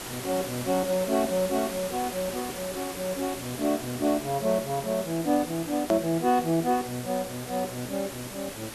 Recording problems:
hiss; slope -3 dB per octave, SNR 9 dB
hard cut with a click; at 6 s

